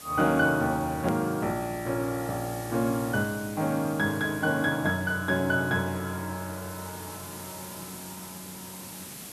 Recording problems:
hiss; SNR 14 dB
click at an edit; at 1 s

